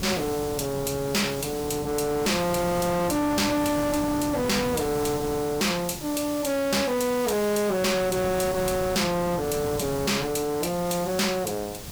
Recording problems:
distorted audio; soft clipping, signal-to-distortion ratio 6 dB
background hiss; slope -1 dB per octave, SNR 13 dB
wind on the microphone; below 380 Hz, SNR 12 dB

